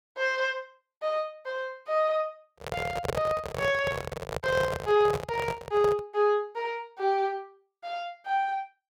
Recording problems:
microphone handling noise; from 2.5 to 6 s; peak +3 dB vs average level

